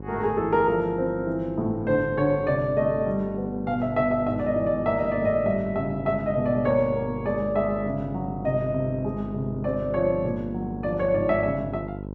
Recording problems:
hum; 50 Hz, harmonics up to 1.1 kHz, SNR 11 dB

